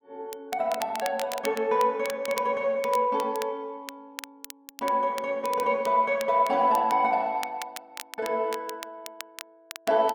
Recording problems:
crackling; vinyl, SNR 16 dB

